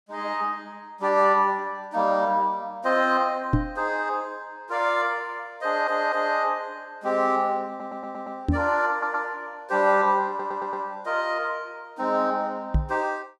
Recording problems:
knock on the microphone; at 3.5 s, at 8.5 s and at 13 s; peak +7 dB vs average level
stutter; 4 times, first at 5.5 s

